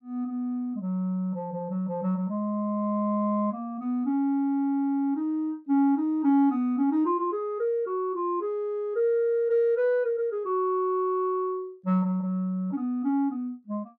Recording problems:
none

